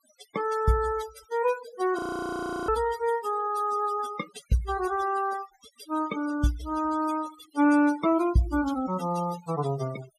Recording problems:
denoising artefacts; signal-to-artefact ratio 14 dB
audio freezing; at 2 s for 0.5 s

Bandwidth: 14.5 kHz